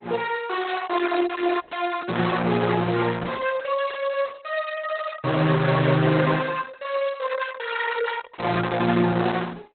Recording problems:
codec artefacts; Opus, log-spectral distance 7 dB, nothing above 4 kHz

